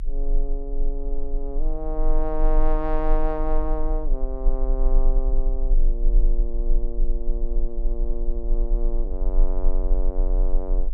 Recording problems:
low-frequency rumble; below 32 Hz, strongest tone 22 Hz, SNR -6 dB

